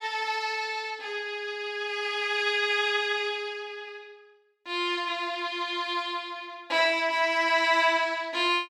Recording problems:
none

